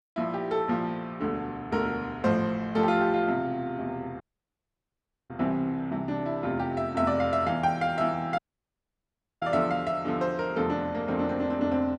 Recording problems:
audio cutting out; at 4 s for 1 s and at 8.5 s for 1 s

